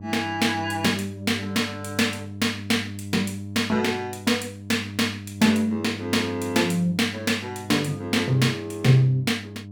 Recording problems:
hum; 50 Hz, harmonics up to 600 Hz, SNR 13 dB

